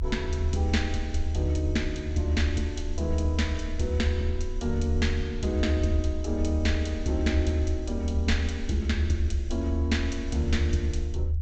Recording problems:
treble cut off; nothing above 8 kHz
rumble; below 78 Hz, strongest tone 78 Hz, SNR 0 dB

